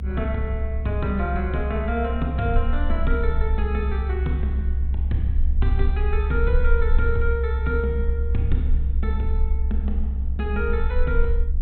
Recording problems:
treble missing; nothing above 4 kHz
hum; 50 Hz, harmonics up to 550 Hz, SNR 12 dB
low-frequency rumble; below 68 Hz, SNR -4 dB

